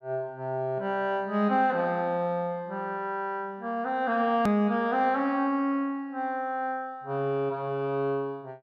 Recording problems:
hard cut with a click; at 4.5 s

